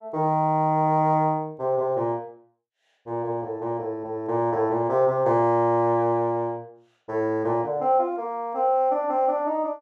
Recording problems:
none

